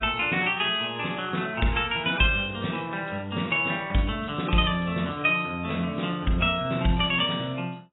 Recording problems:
lossy compression; AAC, log-spectral distance 6 dB, nothing above 3.3 kHz

